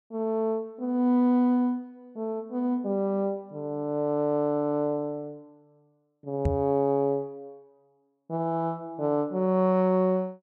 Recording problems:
microphone thump; at 6.5 s; peak +3 dB vs average level

